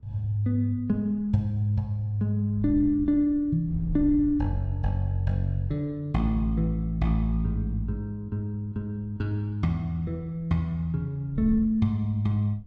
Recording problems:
wind on the microphone; below 92 Hz, SNR 13 dB

